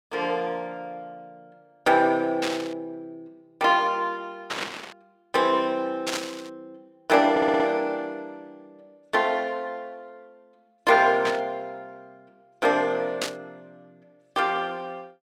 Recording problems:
burst of static; 5 times, first at 2.5 s; peak 0 dB vs average level
stutter; at 7.5 s

